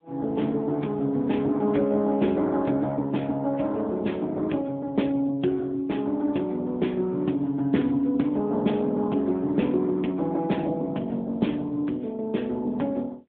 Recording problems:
phone line; 150 Hz to 3.6 kHz, AMR-NB

